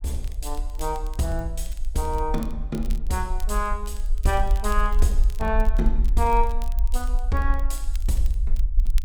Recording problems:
low-frequency rumble; below 46 Hz, SNR -1 dB
crackling; vinyl, SNR 21 dB

